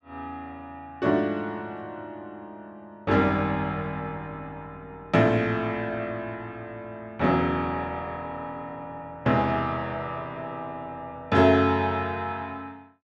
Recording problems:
none

